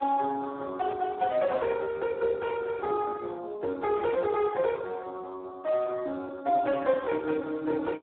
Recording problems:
telephone audio; 240 Hz to 2.1 kHz, Speex

